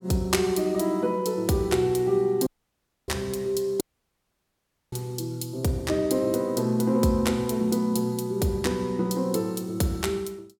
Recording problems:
audio cutting out; at 2.5 s for 0.5 s and at 4 s for 1 s

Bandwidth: 18 kHz